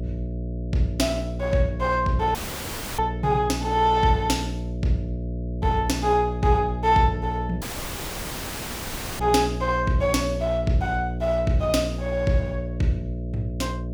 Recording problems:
hum; 60 Hz, harmonics up to 660 Hz, SNR 6 dB
audio cutting out; at 2.5 s for 0.5 s and at 7.5 s for 1.5 s

